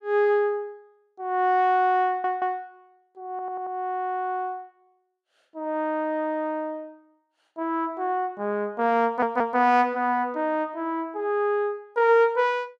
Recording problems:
stutter; at 2 s, at 3.5 s and at 9 s

